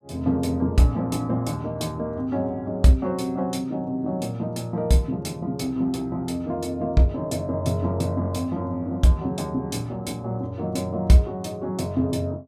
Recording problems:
none

